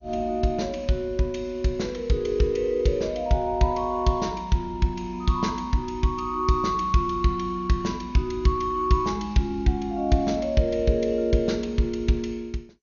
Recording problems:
codec artefacts; MP2, log-spectral distance 2 dB, nothing above 6.7 kHz

